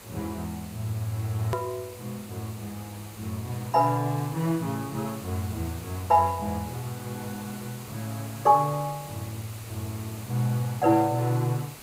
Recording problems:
hiss; slope -3 dB per octave, SNR 15 dB
edit click; at 1.5 s

